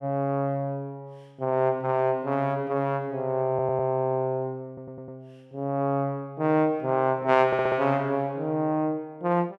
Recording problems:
stutter; at 3.5 s, at 4.5 s and at 7.5 s

